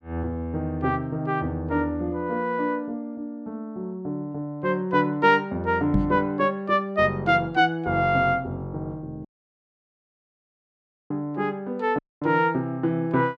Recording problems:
knock on the microphone; at 6 s; peak +6 dB vs average level
audio cutting out; at 9.5 s for 2 s and at 12 s

